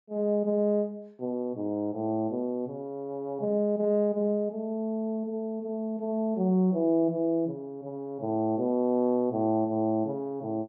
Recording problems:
none

